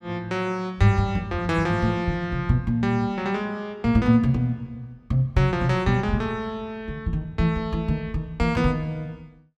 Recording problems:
none

